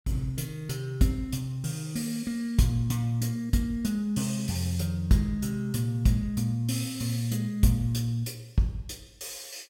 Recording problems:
none

